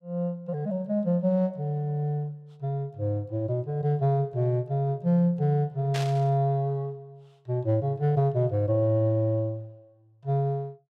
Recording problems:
static burst; at 6 s; peak -4 dB vs average level

